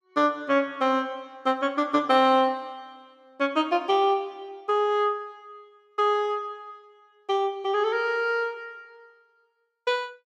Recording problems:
none

